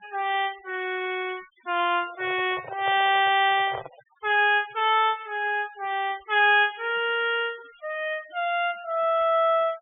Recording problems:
low-pass filter; nothing above 3.5 kHz
denoising artefacts; signal-to-artefact ratio 24 dB
microphone handling noise; from 2 to 4 s; peak -7 dB vs average level

